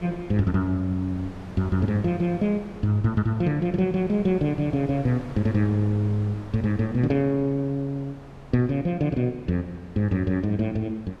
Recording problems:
wind noise; below 780 Hz, SNR 18 dB

